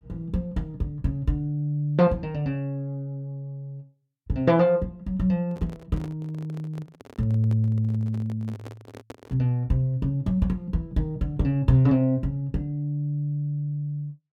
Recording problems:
handling noise; from 5.5 to 9.5 s; peak -10 dB vs average level

